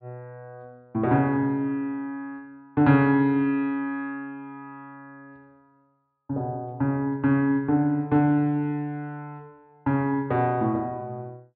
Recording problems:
treble cut off; nothing above 4.7 kHz

